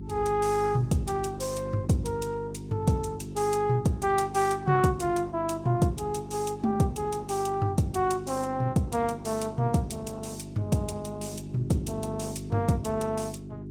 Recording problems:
codec artefacts; Opus, log-spectral distance 3 dB, nothing above 19 kHz
hum; 50 Hz, harmonics up to 400 Hz, SNR 10 dB

